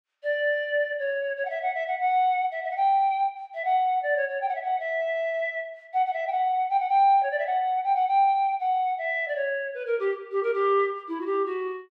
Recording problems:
none

